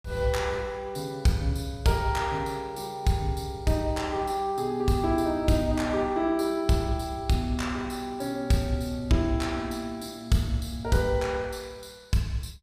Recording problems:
none

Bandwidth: 15 kHz